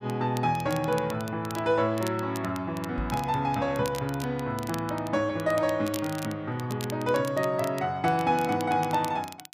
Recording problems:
crackling; vinyl, SNR 16 dB
knock on the microphone; at 3 s; peak -2 dB vs average level

